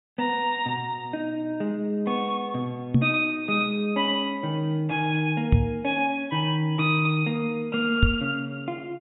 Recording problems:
low-pass filter; nothing above 4 kHz
microphone thump; at 3 s, at 5.5 s and at 8 s; peak +9 dB vs average level

